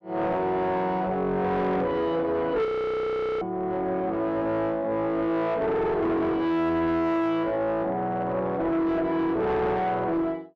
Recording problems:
distortion; soft clipping, signal-to-distortion ratio 6 dB
frozen audio; at 2.5 s for 1 s

